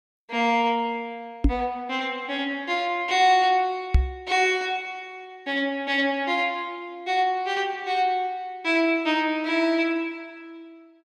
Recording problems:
microphone bump; at 1.5 s and at 4 s; peak +8 dB vs average level

